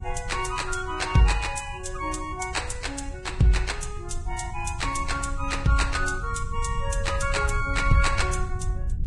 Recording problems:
lossy compression; Vorbis, log-spectral distance 3 dB, nothing above 10.1 kHz
low-frequency rumble; below 80 Hz, SNR 7 dB

